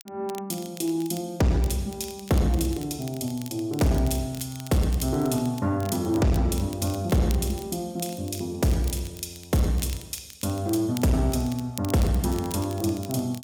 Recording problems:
distortion; soft clipping, signal-to-distortion ratio 11 dB
crackling; vinyl, SNR 18 dB

